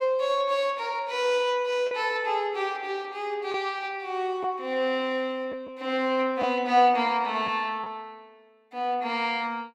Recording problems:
lost packets; 1.4% of the sound replaced, filled with the last packet

